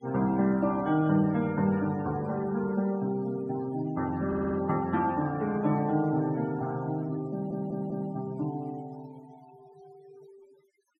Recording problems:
noise reduction artefacts; signal-to-artefact ratio 21 dB
audio stuttering; at 4.5 s and at 7.5 s

